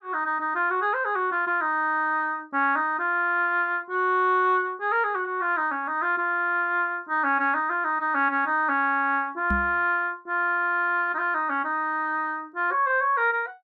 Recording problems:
microphone thump; at 9.5 s; peak -1 dB vs average level

